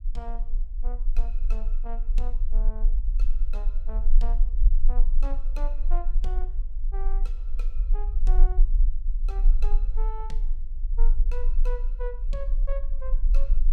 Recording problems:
rumble; below 32 Hz, strongest tone 20 Hz, SNR -15 dB

